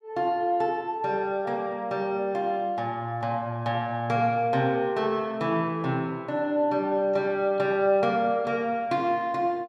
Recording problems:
none

